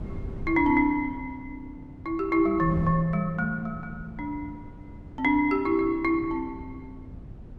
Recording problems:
wind noise; below 190 Hz, SNR 15 dB

